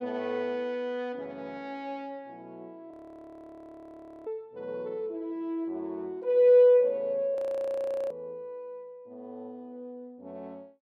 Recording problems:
audio freezing; at 3 s for 1.5 s and at 7.5 s for 1 s

